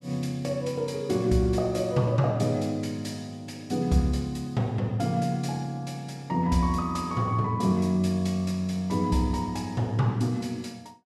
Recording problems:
none

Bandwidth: 13.5 kHz